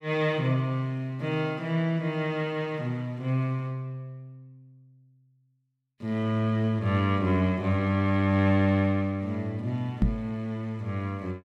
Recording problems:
microphone bump; at 10 s; peak +7 dB vs average level

